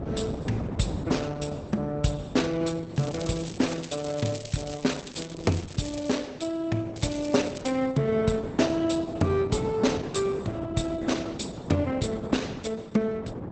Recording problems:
lossy compression; Opus, log-spectral distance 5 dB, nothing above 8.2 kHz
wind on the microphone; below 420 Hz, SNR 9 dB
crackle; from 3 to 6 s and at 7 s; loose cable, SNR 14 dB

